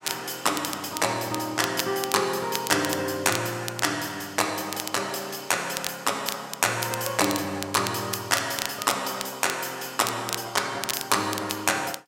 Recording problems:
crackle; vinyl, SNR 8 dB

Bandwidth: 16 kHz